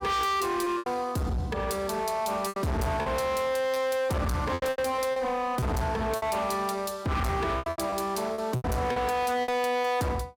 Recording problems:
distorted audio; hard clipping, signal-to-distortion ratio 6 dB
packet loss; 9% of the sound replaced, filled with repeated pitch periods

